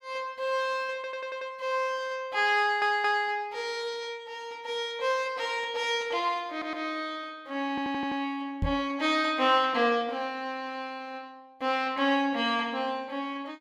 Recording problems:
stutter; 4 times, first at 1 s
microphone thump; at 8.5 s; peak +2 dB vs average level

